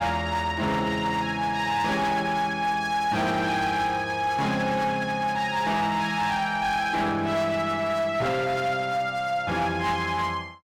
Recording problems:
distorted audio; hard clipping, uneven, signal-to-distortion ratio 10 dB

